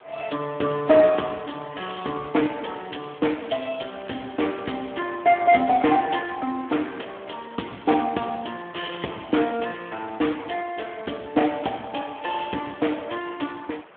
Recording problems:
telephone audio; 190 Hz to 3.4 kHz, Speex
hiss; SNR 23 dB
crackling; from 1 to 5 s and at 9.5 s; loose cable, SNR 27 dB

